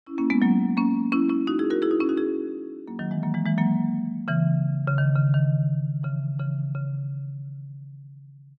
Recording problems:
none

